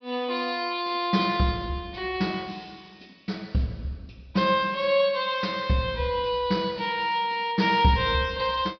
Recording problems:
treble missing; nothing above 5.5 kHz

